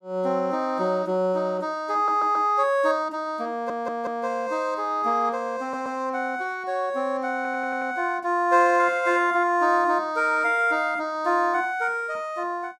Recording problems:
audio stuttering; 4 times, first at 2 s

